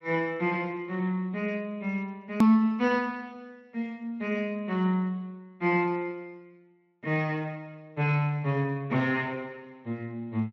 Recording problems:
codec artefacts; Speex, log-spectral distance 2 dB, nothing above 14.1 kHz
edit click; at 2.5 s

